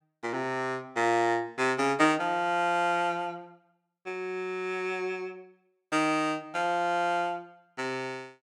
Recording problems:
none

